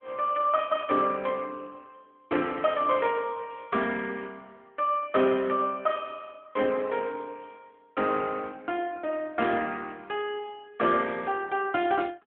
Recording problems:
telephone audio; 190 Hz to 3.5 kHz, AMR-NB

